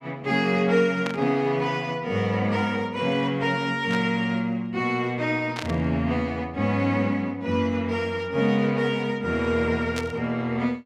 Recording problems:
static burst; 4 times, first at 1 s; peak -3 dB vs average level

